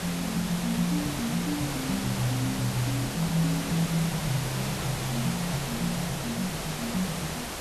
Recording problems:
hiss; slope -3 dB per octave, SNR 3 dB

